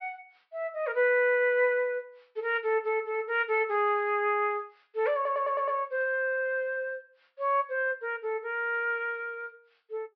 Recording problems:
treble missing; nothing above 5.5 kHz
stutter; at 5 s

